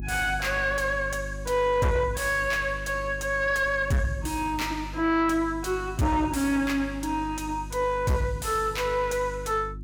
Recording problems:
distorted audio; soft clipping, signal-to-distortion ratio 10 dB
electrical hum; 50 Hz, harmonics up to 350 Hz, SNR 13 dB

